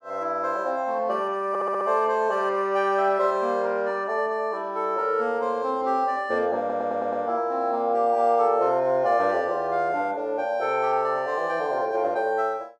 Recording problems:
audio stuttering; at 1.5 s and at 6.5 s

